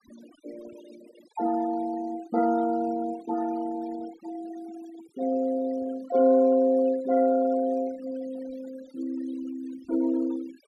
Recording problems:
noise reduction artefacts; signal-to-artefact ratio 21 dB

